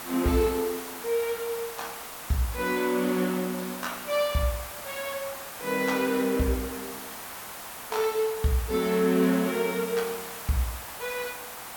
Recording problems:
hiss; SNR 9 dB

